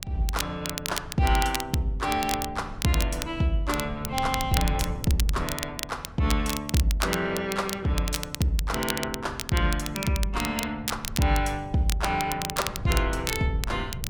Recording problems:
wind on the microphone; below 140 Hz, SNR 13 dB
crackling; vinyl, SNR 7 dB

